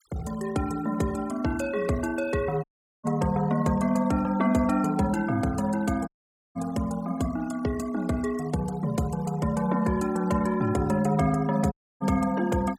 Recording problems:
denoising artefacts; signal-to-artefact ratio 21 dB
dropout; at 2.5 s, at 6 s and at 12 s

